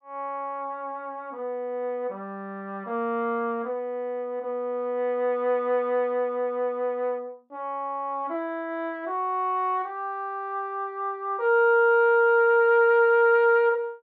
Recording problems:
none

